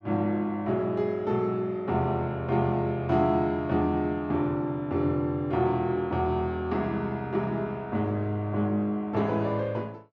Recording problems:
none

